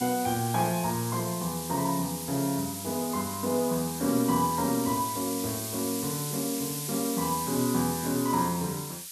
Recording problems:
hiss; SNR 5 dB
crackle; from 4 to 5.5 s and from 6.5 to 7.5 s; loose cable, SNR 27 dB

